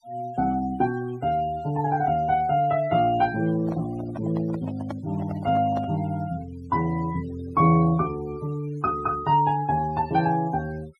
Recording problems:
noise reduction artefacts; signal-to-artefact ratio 22 dB
handling noise; from 3.5 to 6 s; peak -6 dB vs average level

